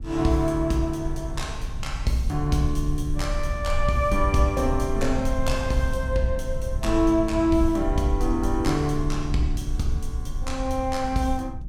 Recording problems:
low-frequency rumble; below 68 Hz, SNR 6 dB

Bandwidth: 17 kHz